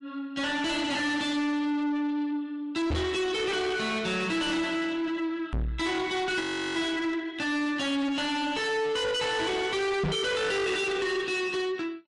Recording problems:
codec artefacts; MP3, log-spectral distance 2 dB, nothing above 11 kHz
distortion; soft clipping, signal-to-distortion ratio 6 dB
knock on the microphone; at 3 s, at 5.5 s and at 10 s; peak +4 dB vs average level
audio freezing; at 6.5 s

